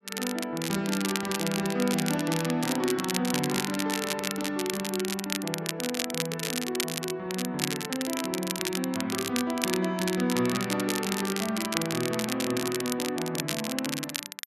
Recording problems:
crackling; vinyl, SNR 3 dB

